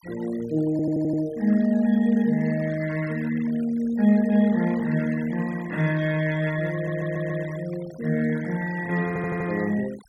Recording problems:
denoising artefacts; signal-to-artefact ratio 19 dB
audio stuttering; at 0.5 s, at 6.5 s and at 9 s

